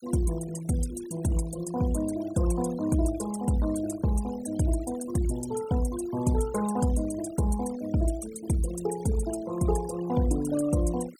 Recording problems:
noise reduction artefacts; signal-to-artefact ratio 16 dB

